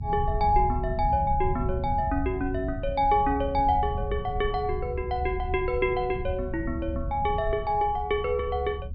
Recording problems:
low-pass filter; nothing above 5.5 kHz
low-frequency rumble; below 100 Hz, SNR 7 dB

